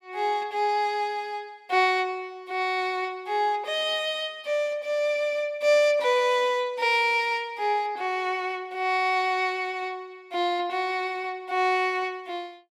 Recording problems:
none

